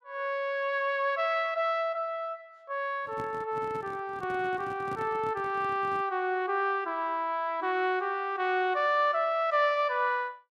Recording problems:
microphone handling noise; from 3 to 6 s; peak -8 dB vs average level

